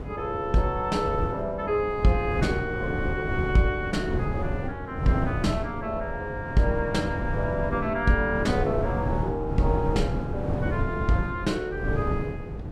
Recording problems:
electrical hum; 50 Hz, harmonics up to 1 kHz, SNR 22 dB
wind on the microphone; below 250 Hz, SNR 4 dB

